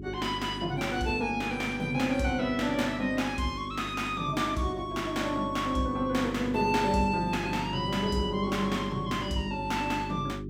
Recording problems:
mains hum; 50 Hz, harmonics up to 400 Hz, SNR 10 dB

